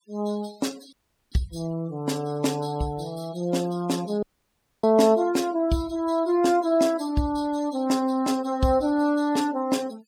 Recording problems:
noise reduction artefacts; signal-to-artefact ratio 21 dB
dropout; at 1 s and at 4 s for 0.5 s

